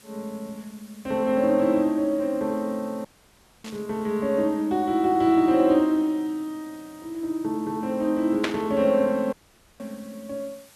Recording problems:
hiss; slope -1 dB per octave, SNR 27 dB
dropout; at 3 s for 0.5 s and at 9.5 s
static burst; at 3.5 s and at 8.5 s; peak +1 dB vs average level

